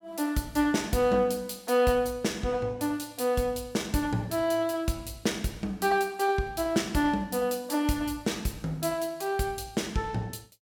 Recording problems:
none

